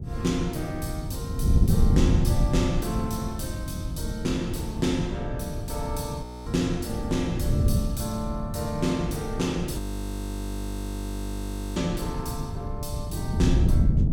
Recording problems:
wind noise; below 140 Hz, SNR -1 dB
frozen audio; at 6 s and at 10 s for 2 s

